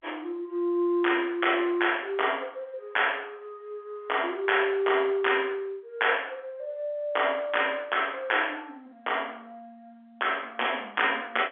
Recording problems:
telephone audio; 260 Hz to 3.4 kHz, G.711

